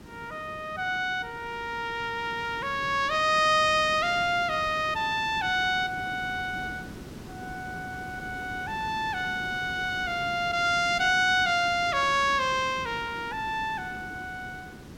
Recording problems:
hiss; SNR 16 dB

